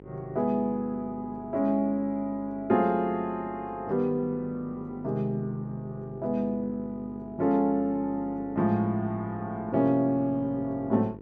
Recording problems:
hum; 50 Hz, harmonics up to 1.1 kHz, SNR 18 dB

